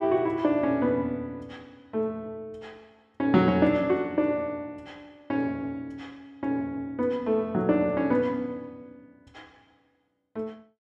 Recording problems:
none

